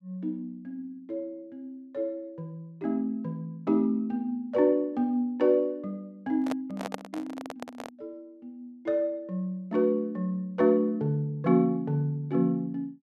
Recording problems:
handling noise; from 6.5 to 8 s; peak -2 dB vs average level

